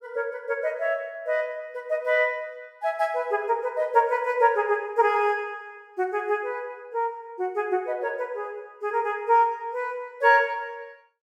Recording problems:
none

